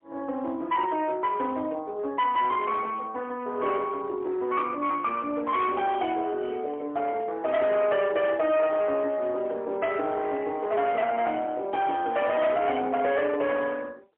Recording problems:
telephone audio; 260 Hz to 3.3 kHz, AMR-NB, then MP3
distorted audio; hard clipping, uneven, signal-to-distortion ratio 10 dB

